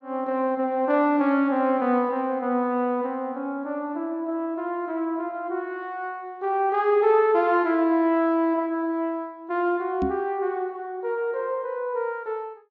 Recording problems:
treble missing; nothing above 8 kHz
microphone thump; at 10 s; peak +1 dB vs average level

